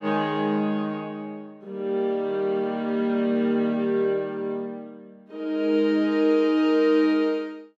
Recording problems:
none

